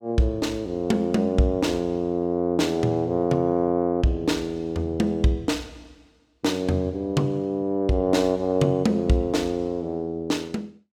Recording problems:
none

